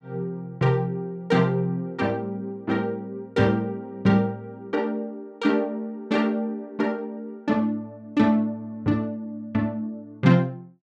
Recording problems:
none

